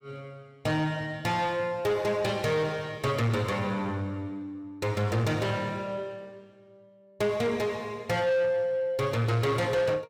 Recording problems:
distortion; soft clipping, signal-to-distortion ratio 10 dB

